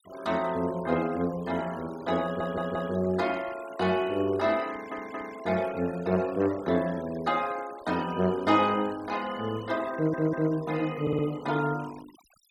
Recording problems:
noise reduction artefacts; signal-to-artefact ratio 18 dB
stutter; 4 times, first at 2 s

